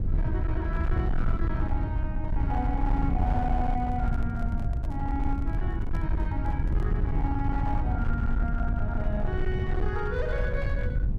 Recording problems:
distortion; hard clipping, uneven, signal-to-distortion ratio 11 dB
low-frequency rumble; below 96 Hz, SNR -4 dB
handling noise; from 3.5 to 7 s; peak -5 dB vs average level

